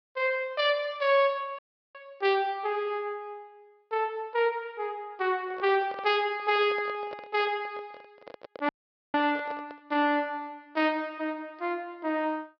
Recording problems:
low-pass filter; nothing above 5.5 kHz
dropout; at 1.5 s and at 8.5 s
microphone handling noise; from 5.5 to 10 s; peak -9 dB vs average level

